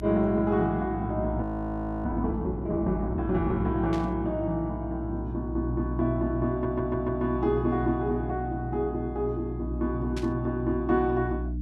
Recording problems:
hum; 60 Hz, harmonics up to 300 Hz, SNR 7 dB
frozen audio; at 1.5 s for 0.5 s
static burst; at 4 s and at 10 s; peak -8 dB vs average level
stutter; at 6.5 s

